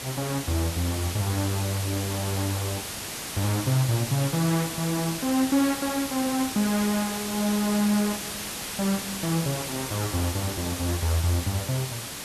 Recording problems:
hiss; slope -1 dB per octave, SNR 5 dB

